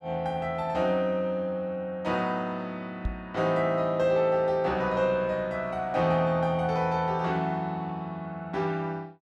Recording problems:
knock on the microphone; at 3 s; peak 0 dB vs average level

